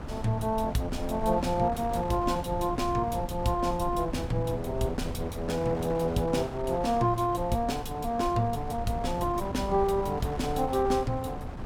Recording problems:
rumble; below 120 Hz, SNR 11 dB
wind noise; below 990 Hz, SNR 13 dB

